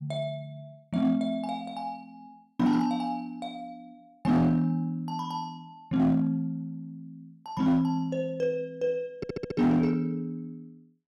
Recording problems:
distortion; hard clipping, signal-to-distortion ratio 11 dB
stutter; at 9 s

